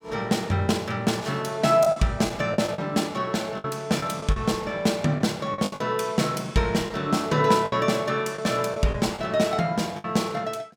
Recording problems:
packet loss; 7% of the sound replaced, filled with the last packet

